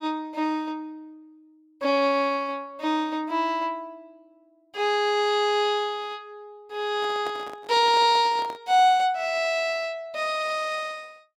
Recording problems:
microphone handling noise; from 7 to 8.5 s; peak -9 dB vs average level

